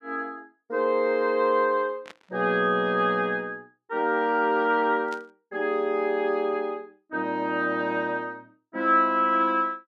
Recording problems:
burst of static; at 2 s and at 5 s; peak -14 dB vs average level

